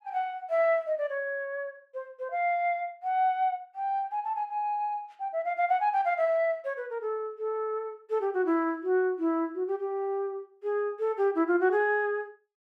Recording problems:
none

